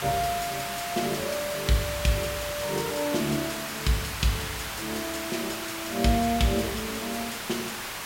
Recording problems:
background hiss; SNR 3 dB

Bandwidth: 16 kHz